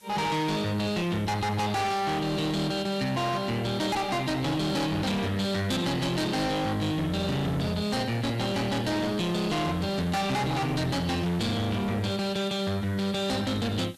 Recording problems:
distorted audio; hard clipping, uneven, signal-to-distortion ratio 5 dB
background hiss; slope 0 dB per octave, SNR 27 dB

